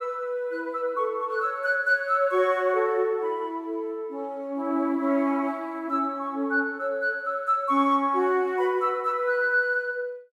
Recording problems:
none

